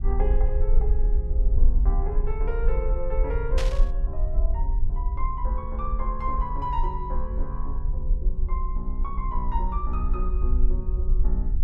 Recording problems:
low-frequency rumble; below 48 Hz, SNR -7 dB
static burst; at 3.5 s; peak +4 dB vs average level

